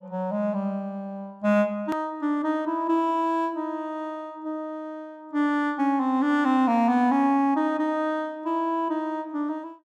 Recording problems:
edit click; at 2 s

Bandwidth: 14.5 kHz